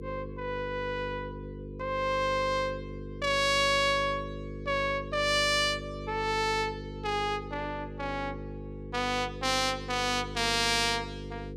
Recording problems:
hum; 50 Hz, harmonics up to 500 Hz, SNR 11 dB

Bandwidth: 15.5 kHz